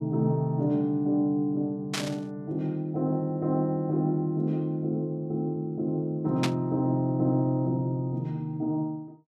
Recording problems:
static burst; at 2 s and at 6.5 s; peak +2 dB vs average level

